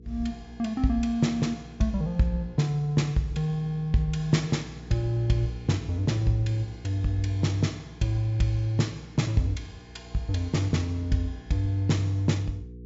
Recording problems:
low-pass filter; nothing above 8 kHz
hum; 60 Hz, harmonics up to 480 Hz, SNR 18 dB

